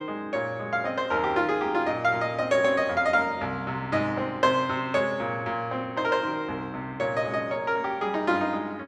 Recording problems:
none

